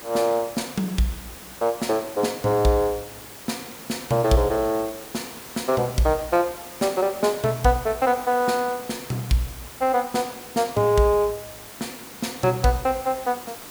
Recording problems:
background hiss; slope -3 dB per octave, SNR 15 dB

